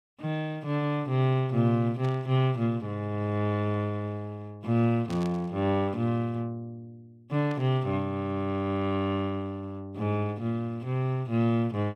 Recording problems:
burst of static; at 2 s, at 5 s and at 7.5 s; peak -12 dB vs average level

